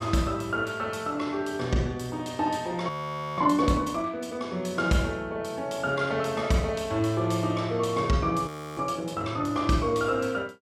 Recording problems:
audio freezing; at 3 s and at 8.5 s

